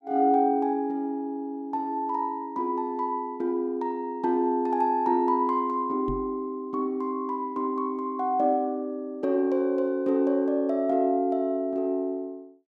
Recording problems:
microphone thump; at 6 s; peak -2 dB vs average level

